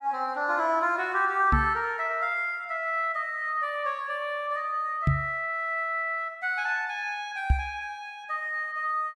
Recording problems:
knock on the microphone; at 1.5 s, at 5 s and at 7.5 s; peak +8 dB vs average level

